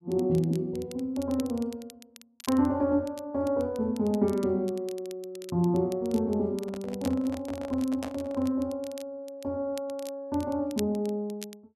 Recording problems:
crackle; vinyl, SNR 20 dB
handling noise; from 6.5 to 8.5 s; peak -3 dB vs average level

